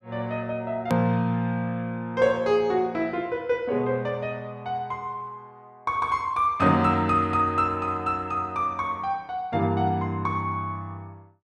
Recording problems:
hard cut with a click; at 1 s

